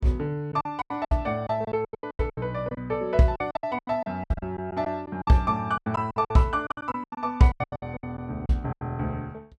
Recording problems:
lost packets; 20% of the sound replaced, filled with silence

